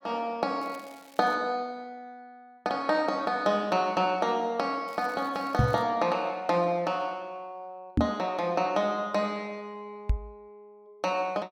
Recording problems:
crackle; at 0.5 s and at 5 s; loose cable, SNR 26 dB
microphone bump; at 5.5 s, at 8 s and at 10 s; peak +8 dB vs average level

